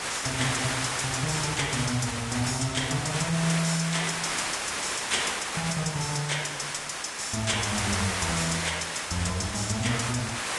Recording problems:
codec artefacts; Vorbis, log-spectral distance 15 dB, nothing above 10.7 kHz
background hiss; slope -1 dB per octave, SNR 1 dB

